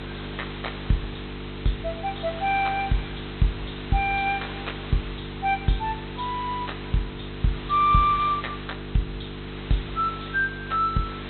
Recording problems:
treble cut off; nothing above 4.1 kHz
hum; 50 Hz, harmonics up to 450 Hz, SNR 11 dB
background hiss; SNR 13 dB

